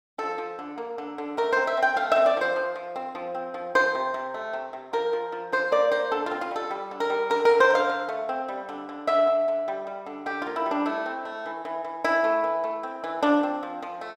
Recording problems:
none

